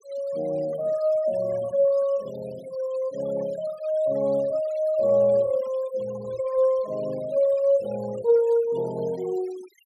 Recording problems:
denoising artefacts; signal-to-artefact ratio 24 dB

